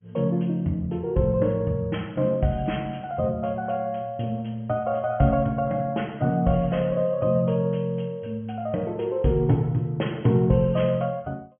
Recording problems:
treble missing; nothing above 3.2 kHz
codec artefacts; Vorbis, log-spectral distance 2 dB

